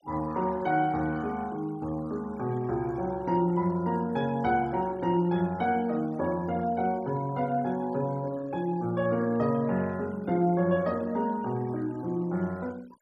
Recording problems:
denoising artefacts; signal-to-artefact ratio 25 dB

